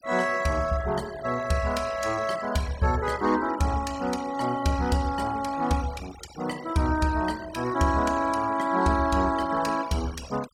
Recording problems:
noise reduction artefacts; signal-to-artefact ratio 17 dB

